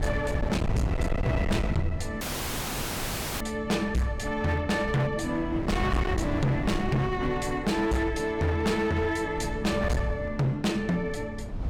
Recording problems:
distortion; hard clipping, signal-to-distortion ratio 6 dB
wind noise; below 210 Hz, SNR 6 dB
audio cutting out; at 2 s for 1 s

